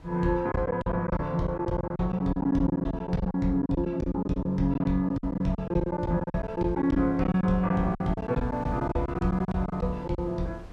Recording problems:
wind noise; below 320 Hz, SNR 23 dB
packet loss; 15% of the sound replaced, filled with silence

